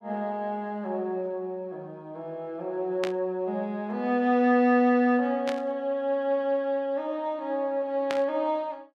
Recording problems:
burst of static; at 3 s, at 5.5 s and at 8 s; peak -2 dB vs average level

